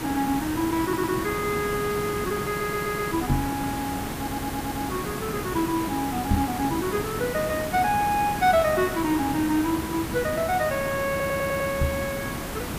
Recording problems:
hiss; slope -5 dB per octave, SNR 5 dB
audio stuttering; 4 times, first at 1 s
microphone bump; at 3.5 s, at 6.5 s and at 12 s; peak +6 dB vs average level

